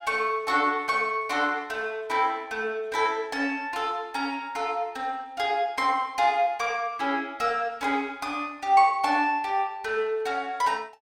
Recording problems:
none

